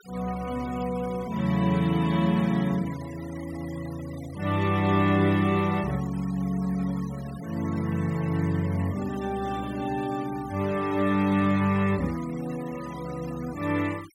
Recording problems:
noise reduction artefacts; signal-to-artefact ratio 19 dB

